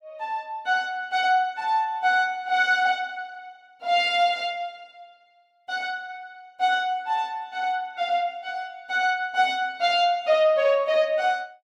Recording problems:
none

